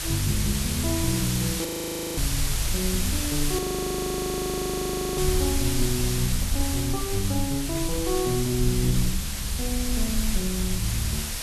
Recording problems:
background hiss; slope +1 dB per octave, SNR 1 dB
low-frequency rumble; below 58 Hz, strongest tone 20 Hz, SNR 7 dB
audio freezing; at 1.5 s for 0.5 s and at 3.5 s for 1.5 s
handling noise; from 5 to 7 s; peak -11 dB vs average level

